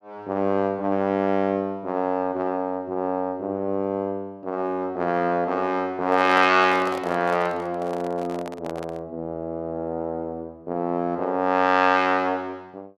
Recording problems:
handling noise; from 6 to 9 s; peak -5 dB vs average level

